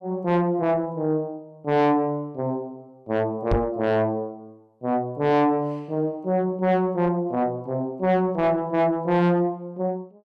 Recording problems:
distorted audio; soft clipping, signal-to-distortion ratio 7 dB
knock on the microphone; at 3.5 s; peak +4 dB vs average level

